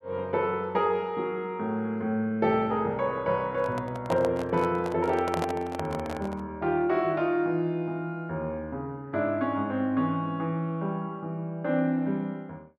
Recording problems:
handling noise; from 3.5 to 6.5 s; peak +1 dB vs average level

